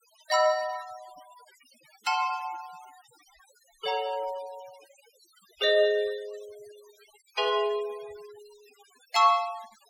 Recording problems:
noise reduction artefacts; signal-to-artefact ratio 23 dB

